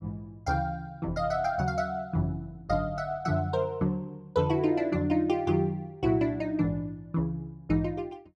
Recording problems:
none

